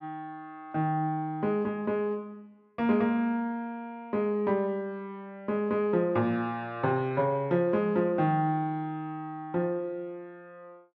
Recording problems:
none

